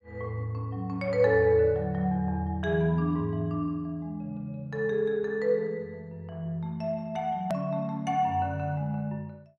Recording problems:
click at an edit; at 7.5 s

